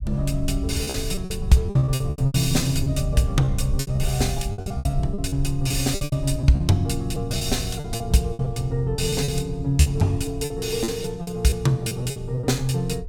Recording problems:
low-frequency rumble; below 76 Hz, SNR 9 dB
packet loss; 15% of the sound replaced, filled with repeated pitch periods

